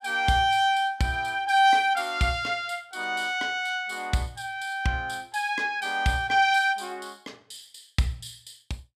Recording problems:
none

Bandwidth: 14 kHz